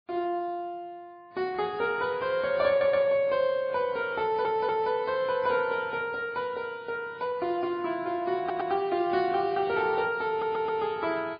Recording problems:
lossy codec; MP3, then AAC, log-spectral distance 2 dB, nothing above 4.2 kHz
audio stuttering; 4 times, first at 2.5 s

